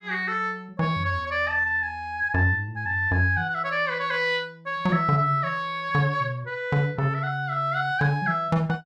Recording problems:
none

